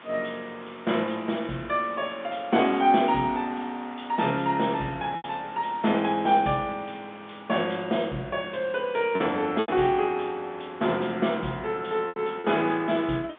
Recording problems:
telephone audio; 150 Hz to 3.6 kHz, G.711
hiss; SNR 22 dB
lost packets; 2% of the sound replaced, filled with repeated pitch periods

